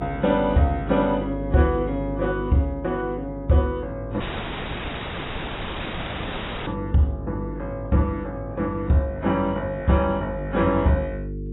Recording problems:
lossy codec; AAC, log-spectral distance 5 dB, nothing above 3.3 kHz
mains hum; 50 Hz, harmonics up to 450 Hz, SNR 10 dB
audio cutting out; at 4 s for 2.5 s

